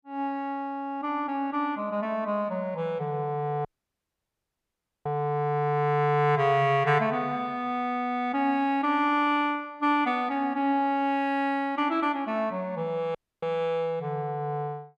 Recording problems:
dropout; at 3.5 s for 1.5 s and at 13 s

